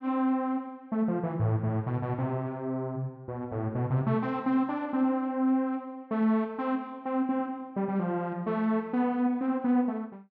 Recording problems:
treble missing; nothing above 8 kHz

